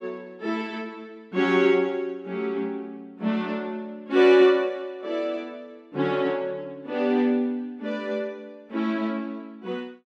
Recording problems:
none

